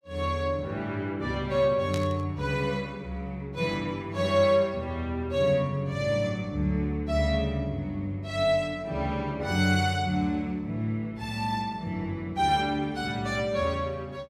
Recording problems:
static burst; at 2 s; peak -6 dB vs average level

